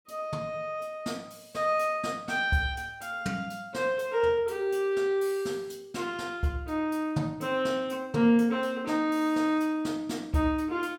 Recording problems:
none

